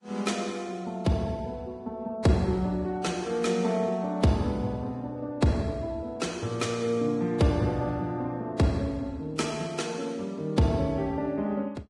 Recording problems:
lossy compression; Vorbis, log-spectral distance 2 dB, nothing above 10.4 kHz

